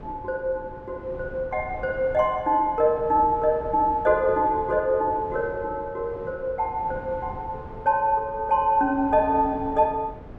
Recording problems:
wind on the microphone; below 430 Hz, SNR 17 dB

